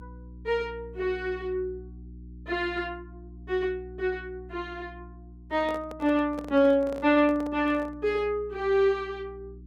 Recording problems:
electrical hum; 60 Hz, harmonics up to 360 Hz, SNR 19 dB
handling noise; from 5.5 to 8 s; peak -8 dB vs average level

